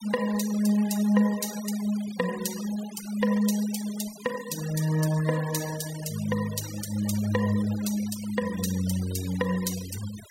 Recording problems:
denoising artefacts; signal-to-artefact ratio 13 dB

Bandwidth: 16 kHz